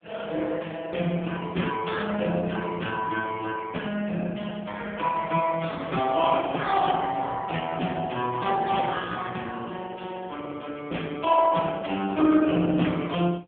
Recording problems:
telephone audio; 190 Hz to 3.5 kHz, AMR-NB

